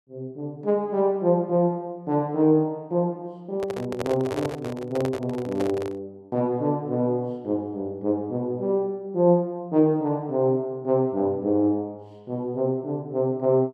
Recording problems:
handling noise; from 3.5 to 6 s; peak -1 dB vs average level

